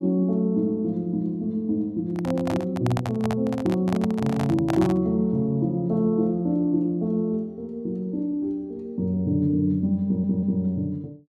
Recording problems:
handling noise; from 2 to 5 s; peak -1 dB vs average level
stutter; at 10 s

